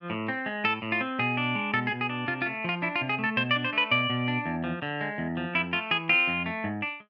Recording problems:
none

